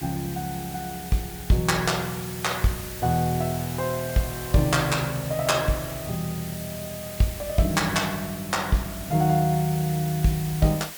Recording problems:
background hiss; slope 0 dB per octave, SNR 11 dB

